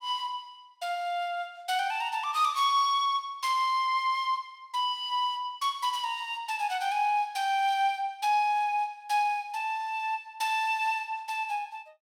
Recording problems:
none

